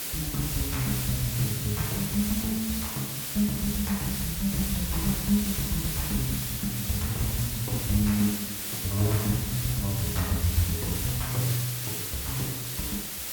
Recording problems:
background hiss; slope 0 dB per octave, SNR 2 dB

